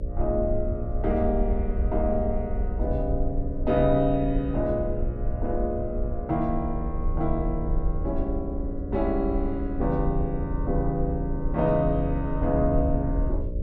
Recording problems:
hum; 60 Hz, harmonics up to 600 Hz, SNR 12 dB
rumble; below 64 Hz, SNR 4 dB

